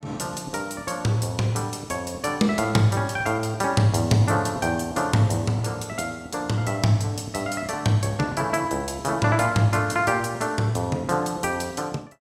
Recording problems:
none

